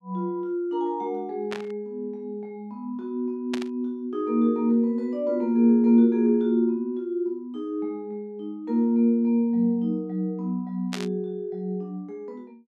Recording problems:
burst of static; at 1.5 s, at 3.5 s and at 11 s; peak -4 dB vs average level

